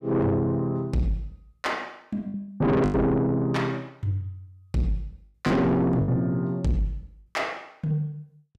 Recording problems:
distorted audio; soft clipping, signal-to-distortion ratio 7 dB
lost packets; 4% of the sound replaced, filled with the last packet

